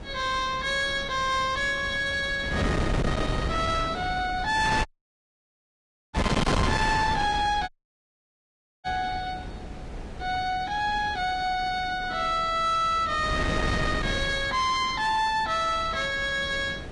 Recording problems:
lossy codec; Vorbis, log-spectral distance 3 dB
distorted audio; soft clipping, signal-to-distortion ratio 7 dB
wind noise; below 920 Hz, SNR 6 dB
audio cutting out; at 5 s for 1.5 s and at 7.5 s for 1 s

